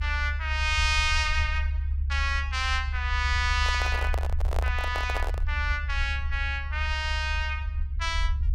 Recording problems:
low-frequency rumble; below 72 Hz, strongest tone 70 Hz, SNR 2 dB
handling noise; from 3.5 to 5.5 s; peak -2 dB vs average level

